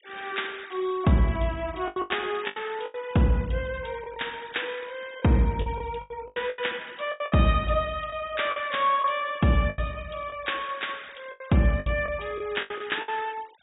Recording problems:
treble missing; nothing above 4 kHz
noise reduction artefacts; signal-to-artefact ratio 23 dB
packet loss; 10% of the sound replaced, filled with the last packet

